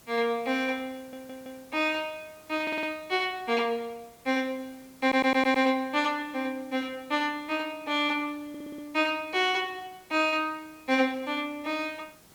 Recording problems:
hiss; slope -3 dB per octave, SNR 26 dB
audio stuttering; 4 times, first at 1 s

